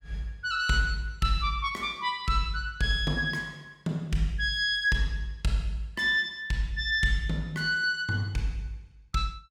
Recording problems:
none

